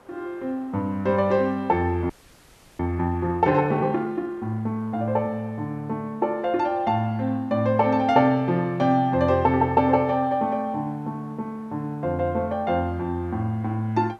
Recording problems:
hiss; SNR 29 dB
audio freezing; at 2 s for 0.5 s

